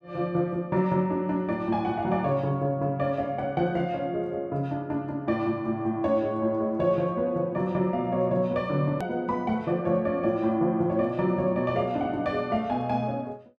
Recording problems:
edit click; at 9 s

